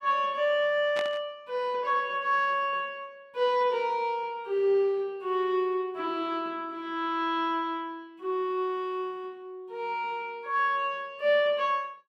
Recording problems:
burst of static; at 1 s; peak -3 dB vs average level

